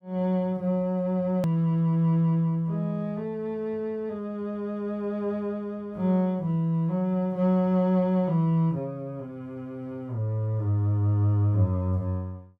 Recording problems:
edit click; at 1.5 s

